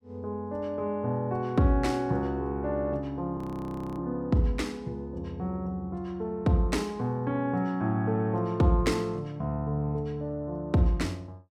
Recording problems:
audio freezing; at 3.5 s for 0.5 s

